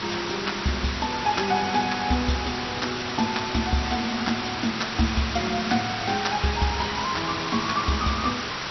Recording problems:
codec artefacts; MP2, log-spectral distance 18 dB, nothing above 5.8 kHz
background hiss; SNR 3 dB

